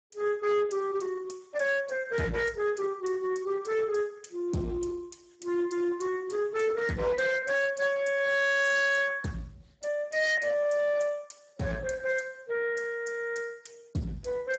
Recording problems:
codec artefacts; Speex, log-spectral distance 4 dB, nothing above 7.6 kHz
distorted audio; hard clipping, signal-to-distortion ratio 11 dB

